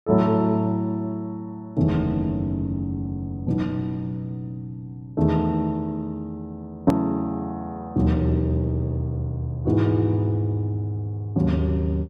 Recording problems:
hard cut with a click; at 7 s

